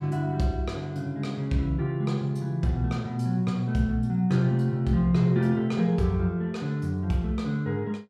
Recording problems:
none

